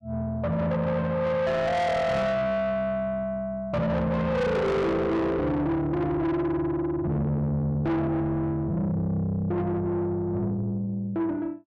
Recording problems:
distorted audio; soft clipping, signal-to-distortion ratio 7 dB

